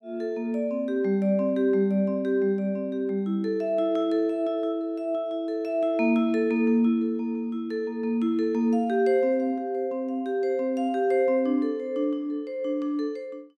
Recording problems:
none

